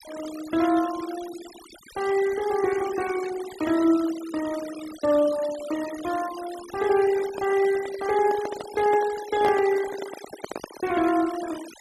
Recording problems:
noise reduction artefacts; signal-to-artefact ratio 15 dB
microphone handling noise; from 7 to 11 s; peak -1 dB vs average level

